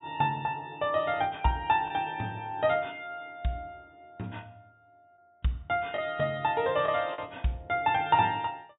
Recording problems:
low-pass filter; nothing above 4 kHz
packet loss; 1.3% of the sound replaced, filled with the last packet

